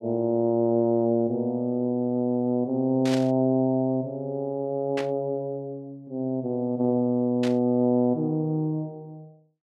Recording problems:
static burst; at 3 s, at 5 s and at 7.5 s; peak -5 dB vs average level

